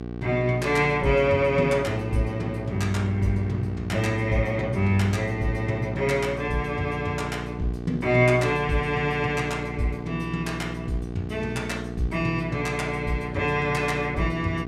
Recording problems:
hum; 60 Hz, harmonics up to 1.2 kHz, SNR 9 dB

